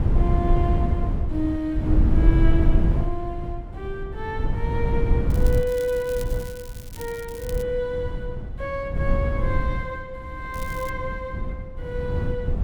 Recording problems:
wind on the microphone; below 94 Hz, SNR -4 dB
crackle; from 5.5 to 7.5 s and at 11 s; loose cable, SNR 14 dB

